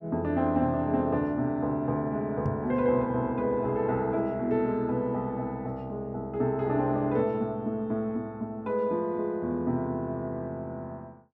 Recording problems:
microphone bump; at 2.5 s; peak -1 dB vs average level

